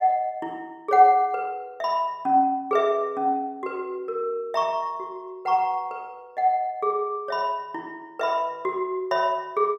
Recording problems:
none

